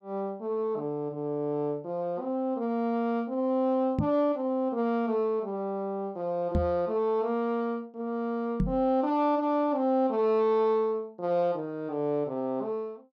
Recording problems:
knock on the microphone; at 4 s, at 6.5 s and at 8.5 s; peak +4 dB vs average level

